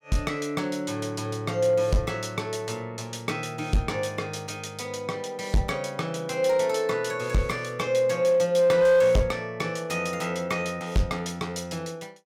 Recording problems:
distortion; hard clipping, uneven, signal-to-distortion ratio 11 dB

